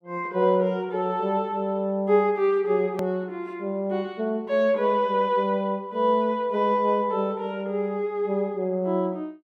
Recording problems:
edit click; at 3 s

